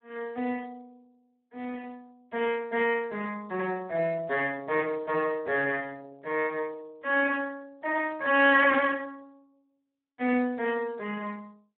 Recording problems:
telephone audio; 320 Hz to 3 kHz, Speex

